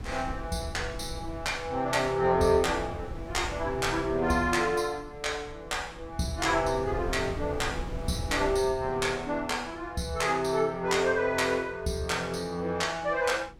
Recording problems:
wind noise; below 160 Hz, SNR 13 dB

